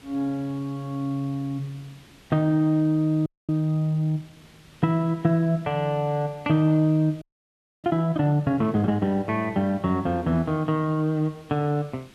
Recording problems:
hiss; SNR 27 dB
audio freezing; at 3.5 s and at 7 s for 0.5 s

